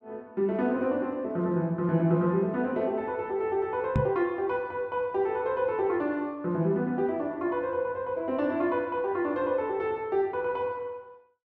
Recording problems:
knock on the microphone; at 4 s; peak +5 dB vs average level

